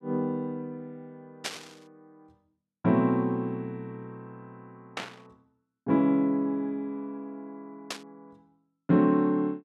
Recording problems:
burst of static; at 1.5 s, at 5 s and at 8 s; peak -1 dB vs average level

